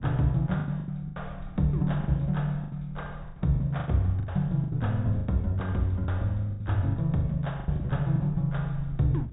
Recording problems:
treble missing; nothing above 4 kHz
rumble; below 78 Hz, SNR 18 dB
lost packets; 13% of the sound replaced, filled with the last packet

